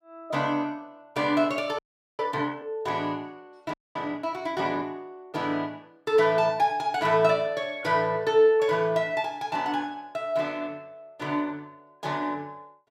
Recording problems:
audio freezing; at 2 s and at 3.5 s

